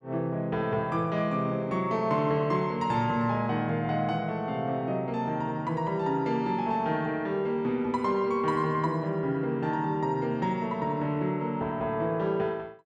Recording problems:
none

